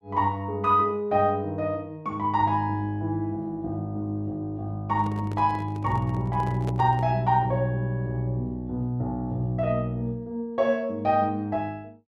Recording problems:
handling noise; from 5 to 7 s; peak -5 dB vs average level

